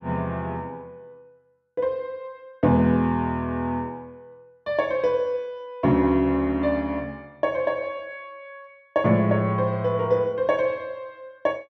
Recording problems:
none

